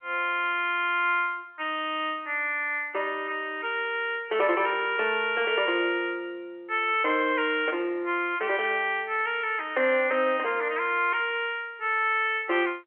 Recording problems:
phone line; 280 Hz to 3.2 kHz, G.711

